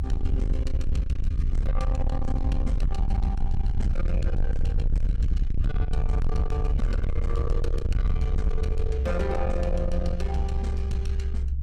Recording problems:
distorted audio; soft clipping, signal-to-distortion ratio 7 dB
low-frequency rumble; below 68 Hz, SNR -5 dB

